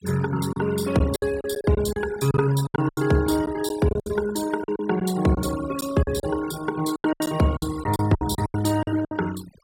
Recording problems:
denoising artefacts; signal-to-artefact ratio 15 dB
lost packets; 13% of the sound replaced, filled with silence

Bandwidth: 16 kHz